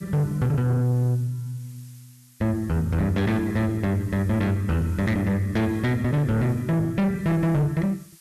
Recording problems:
distortion; soft clipping, signal-to-distortion ratio 8 dB
hiss; slope +4 dB per octave, SNR 27 dB

